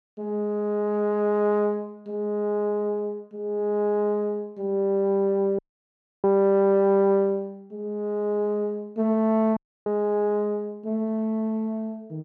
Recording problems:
audio cutting out; at 5.5 s for 0.5 s and at 9.5 s

